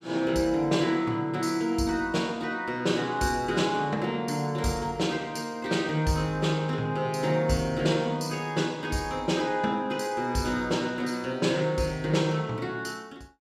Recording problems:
none

